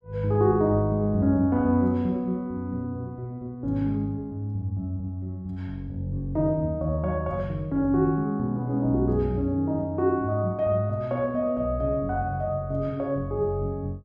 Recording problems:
none

